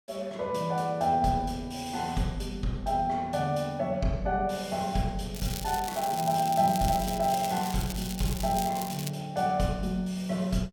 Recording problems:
crackle; from 5.5 to 9 s; loose cable, SNR 10 dB

